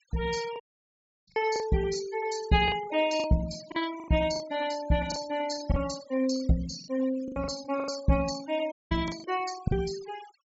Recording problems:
treble cut off; nothing above 8 kHz
denoising artefacts; signal-to-artefact ratio 14 dB
packet loss; 9% of the sound replaced, filled with the last packet
audio cutting out; at 0.5 s for 0.5 s and at 8.5 s

